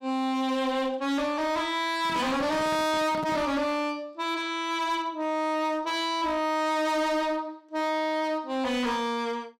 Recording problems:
distortion; hard clipping, signal-to-distortion ratio 7 dB
handling noise; from 2 to 3.5 s; peak -5 dB vs average level

